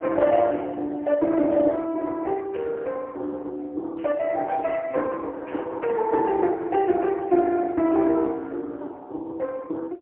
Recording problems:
telephone audio; 260 Hz to 3.2 kHz, AMR-NB, then MP3
burst of static; at 2.5 s, at 4 s and at 5.5 s; peak -17 dB vs average level

